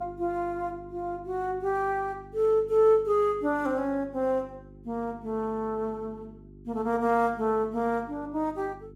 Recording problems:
electrical hum; 50 Hz, harmonics up to 400 Hz, SNR 21 dB

